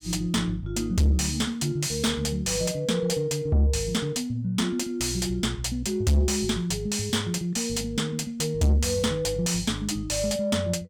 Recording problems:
distortion; soft clipping, signal-to-distortion ratio 6 dB

